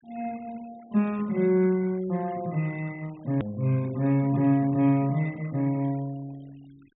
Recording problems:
treble missing; nothing above 4 kHz
denoising artefacts; signal-to-artefact ratio 26 dB
edit click; at 3.5 s

